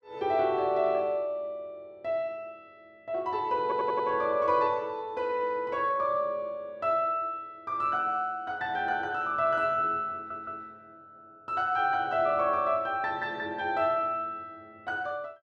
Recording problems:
stutter; at 3.5 s and at 10 s

